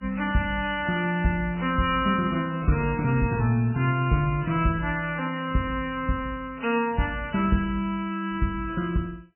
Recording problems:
codec artefacts; MP3, log-spectral distance 4 dB, nothing above 2.7 kHz

